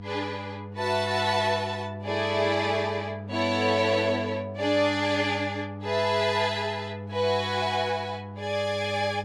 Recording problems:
mains hum; 50 Hz, harmonics up to 700 Hz, SNR 11 dB

